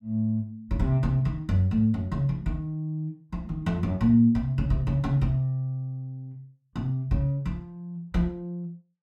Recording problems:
none

